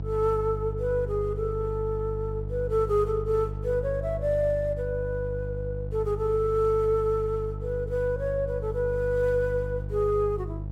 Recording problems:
hum; 50 Hz, harmonics up to 500 Hz, SNR 7 dB

